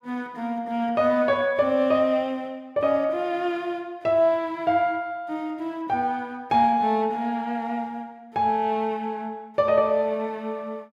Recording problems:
none

